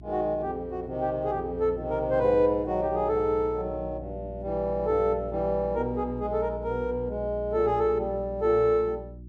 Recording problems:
hum; 60 Hz, harmonics up to 360 Hz, SNR 14 dB

